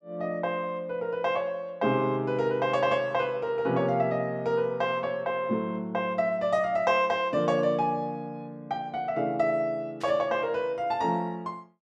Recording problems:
burst of static; at 10 s; peak -13 dB vs average level

